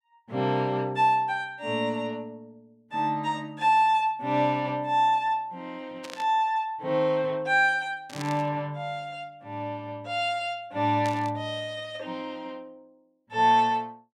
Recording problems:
static burst; at 6 s, at 8 s and at 11 s; peak -8 dB vs average level

